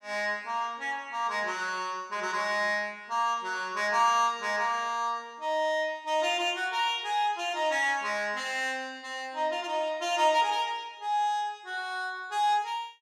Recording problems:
none

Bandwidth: 15.5 kHz